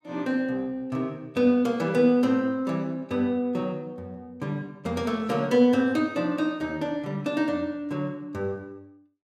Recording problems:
none

